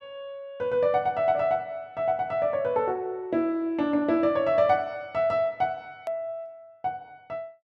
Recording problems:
edit click; at 6 s

